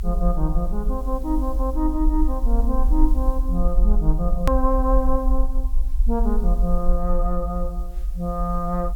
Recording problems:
background hiss; slope 0 dB per octave, SNR 27 dB
low-frequency rumble; below 48 Hz, SNR -1 dB
click at an edit; at 4.5 s

